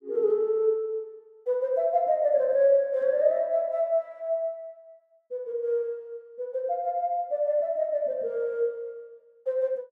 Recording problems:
none

